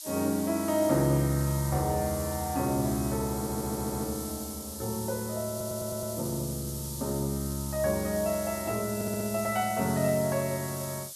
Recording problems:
background hiss; SNR 8 dB
audio stuttering; at 3.5 s, at 5.5 s and at 9 s

